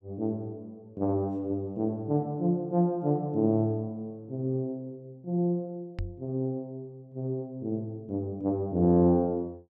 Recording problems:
knock on the microphone; at 6 s; peak -2 dB vs average level

